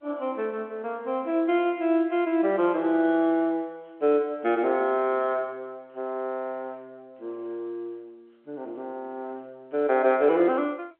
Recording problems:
telephone audio; 260 Hz to 3.3 kHz, G.711

